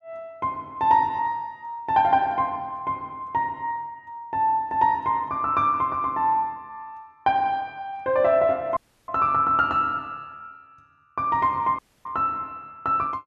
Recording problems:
audio cutting out; at 9 s and at 12 s

